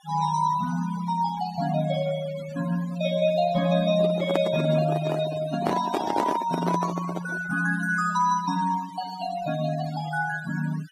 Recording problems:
denoising artefacts; signal-to-artefact ratio 14 dB
handling noise; from 4 to 7.5 s; peak +3 dB vs average level

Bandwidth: 14.5 kHz